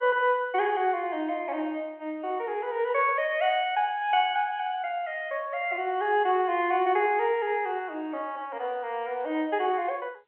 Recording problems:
telephone audio; 260 Hz to 3.2 kHz, G.711

